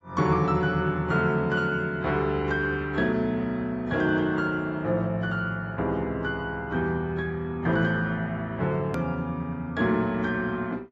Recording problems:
lossy codec; AAC, log-spectral distance 2 dB, nothing above 13.1 kHz
edit click; at 9 s

